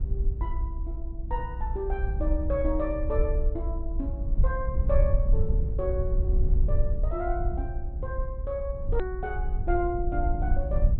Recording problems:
low-pass filter; nothing above 4 kHz
low-frequency rumble; below 60 Hz, SNR -3 dB
hard cut with a click; at 9 s

